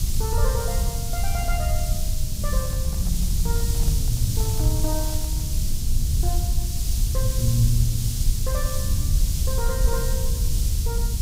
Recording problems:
hiss; SNR 2 dB
low-frequency rumble; below 76 Hz, SNR -4 dB
handling noise; from 2.5 to 5.5 s; peak -11 dB vs average level

